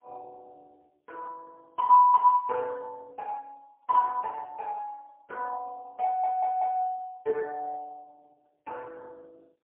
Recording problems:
telephone audio; 300 Hz to 3 kHz, AMR-NB, then MP3
audio stuttering; at 6 s

